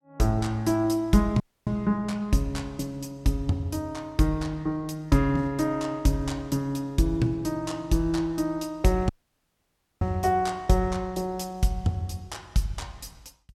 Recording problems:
audio cutting out; at 1.5 s and at 9 s for 1 s

